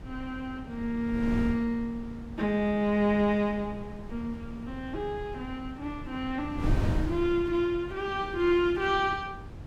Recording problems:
wind noise; below 160 Hz, SNR 9 dB

